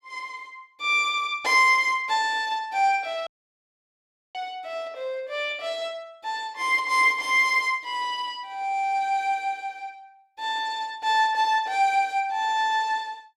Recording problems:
audio cutting out; at 3.5 s for 1 s

